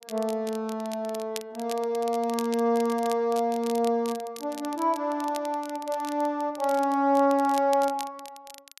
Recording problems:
crackling; vinyl, SNR 17 dB

